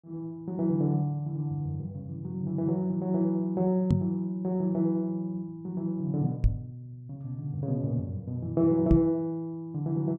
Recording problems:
knock on the microphone; at 4 s, at 6.5 s and at 9 s; peak +8 dB vs average level

